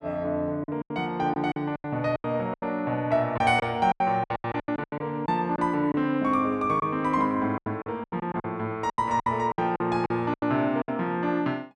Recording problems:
packet loss; 14% of the sound replaced, filled with silence

